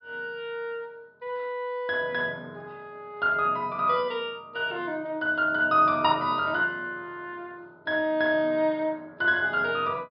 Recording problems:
treble cut off; nothing above 5.5 kHz

